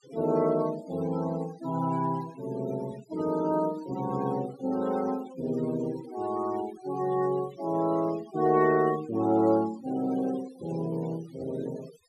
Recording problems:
noise reduction artefacts; signal-to-artefact ratio 20 dB

